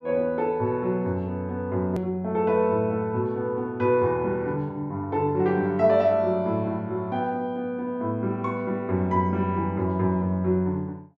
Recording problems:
hard cut with a click; at 2 s

